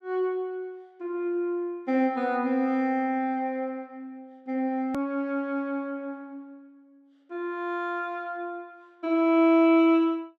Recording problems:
edit click; at 5 s

